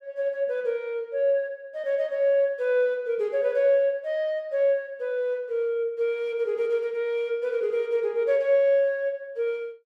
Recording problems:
none

